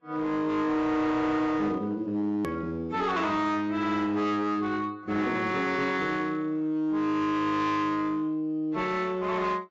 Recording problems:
codec artefacts; AAC, log-spectral distance 2 dB, nothing above 13.7 kHz
distorted audio; hard clipping, signal-to-distortion ratio 11 dB
click at an edit; at 2.5 s

